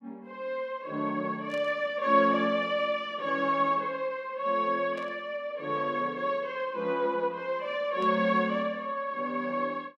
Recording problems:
burst of static; at 1.5 s, at 5 s and at 8 s; peak -14 dB vs average level

